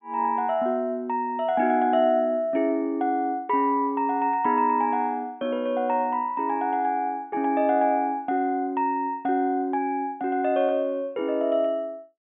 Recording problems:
treble cut off; nothing above 3.5 kHz

